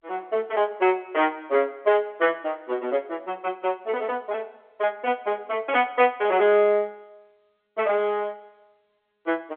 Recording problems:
telephone audio; 240 Hz to 3.4 kHz, G.711

